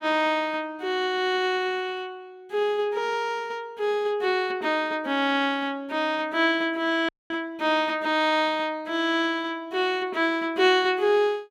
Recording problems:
audio cutting out; at 7 s

